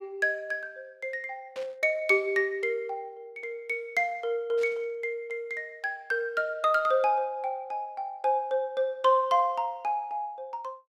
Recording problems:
static burst; at 1.5 s and at 4.5 s; peak -13 dB vs average level

